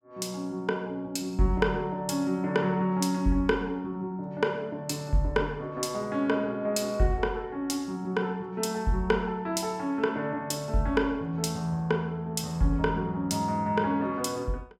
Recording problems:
none

